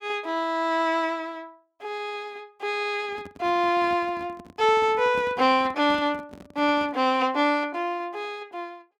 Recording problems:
microphone handling noise; from 3 to 7 s; peak -10 dB vs average level

